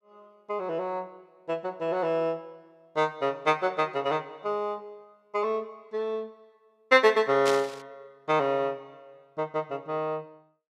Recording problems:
static burst; at 7.5 s; peak 0 dB vs average level

